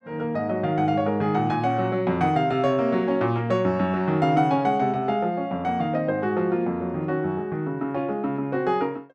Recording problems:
none

